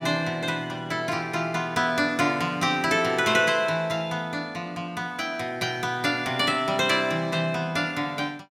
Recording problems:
none

